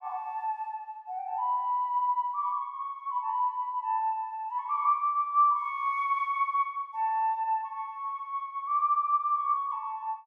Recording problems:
none

